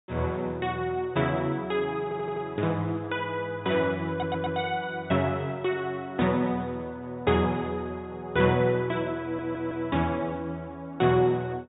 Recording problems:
treble cut off; nothing above 4 kHz
audio stuttering; at 2 s, at 4 s and at 9 s

